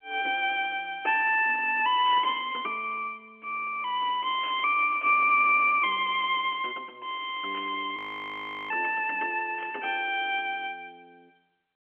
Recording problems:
telephone audio; 260 Hz to 3.5 kHz, G.711
burst of static; 4 times, first at 2 s; peak -14 dB vs average level
frozen audio; at 8 s for 0.5 s

